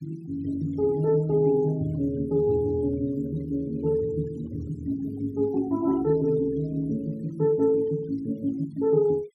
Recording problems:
noise reduction artefacts; signal-to-artefact ratio 24 dB

